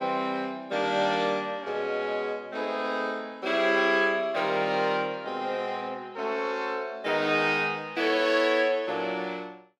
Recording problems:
none

